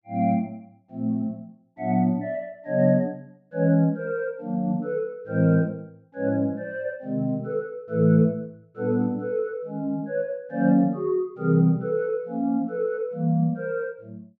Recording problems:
none

